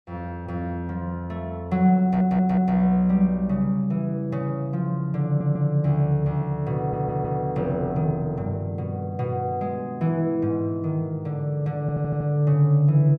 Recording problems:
stutter; 4 times, first at 2 s

